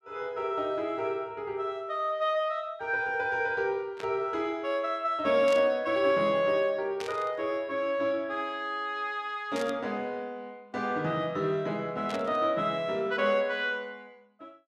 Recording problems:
static burst; 5 times, first at 4 s; peak -6 dB vs average level

